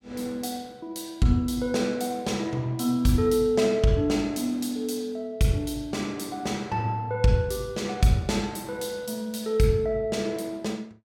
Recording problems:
none

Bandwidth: 16.5 kHz